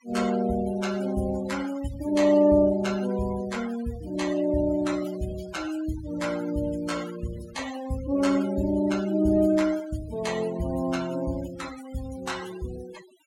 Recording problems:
denoising artefacts; signal-to-artefact ratio 16 dB

